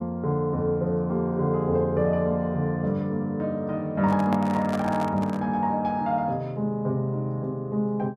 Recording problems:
handling noise; from 4 to 5.5 s; peak -2 dB vs average level

